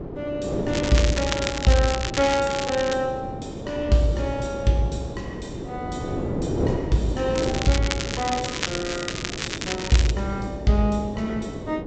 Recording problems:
treble cut off; nothing above 8 kHz
wind on the microphone; below 450 Hz, SNR 7 dB
crackling; from 0.5 to 3 s and from 7.5 to 10 s; loose cable, SNR 5 dB

